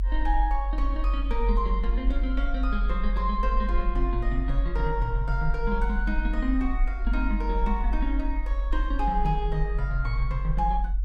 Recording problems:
low-frequency rumble; below 46 Hz, strongest tone 44 Hz, SNR -2 dB

